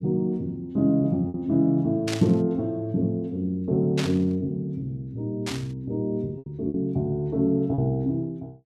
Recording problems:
packet loss; 3% of the sound replaced, filled with repeated pitch periods
burst of static; at 2 s, at 4 s and at 5.5 s; peak -1 dB vs average level

